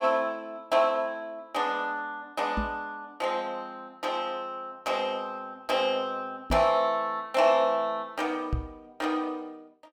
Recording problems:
knock on the microphone; at 2.5 s, at 6.5 s and at 8.5 s; peak +3 dB vs average level

